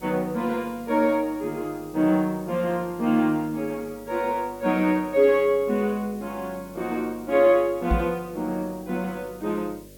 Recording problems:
hum; 50 Hz, harmonics up to 600 Hz, SNR 25 dB
background hiss; slope +2 dB per octave, SNR 25 dB
knock on the microphone; at 8 s; peak +5 dB vs average level

